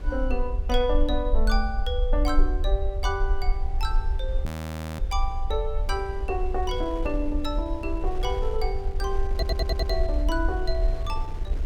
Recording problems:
rumble; below 50 Hz, SNR -1 dB
wind on the microphone; below 400 Hz, SNR 13 dB
frozen audio; at 4.5 s for 0.5 s
audio stuttering; at 9.5 s

